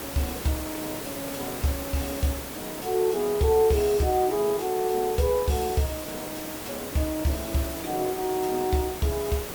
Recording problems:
hiss; slope -4 dB per octave, SNR 8 dB

